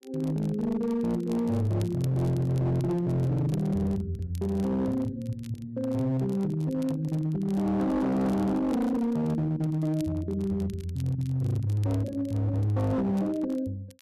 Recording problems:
distorted audio; hard clipping, signal-to-distortion ratio 10 dB
crackle; vinyl, SNR 27 dB

